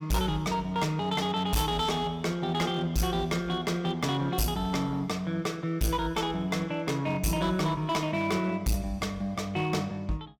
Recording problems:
distortion; hard clipping, uneven, signal-to-distortion ratio 10 dB

